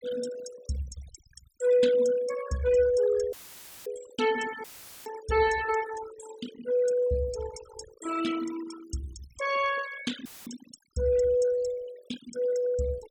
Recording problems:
noise reduction artefacts; signal-to-artefact ratio 13 dB
dropout; at 3.5 s for 0.5 s, at 4.5 s and at 10 s; filled with static

